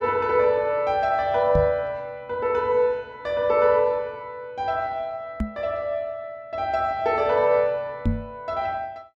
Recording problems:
knock on the microphone; at 1.5 s, at 5.5 s and at 8 s; peak +4 dB vs average level

